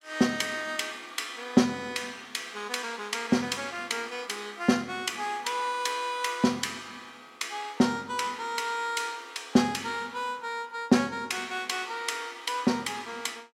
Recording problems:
none

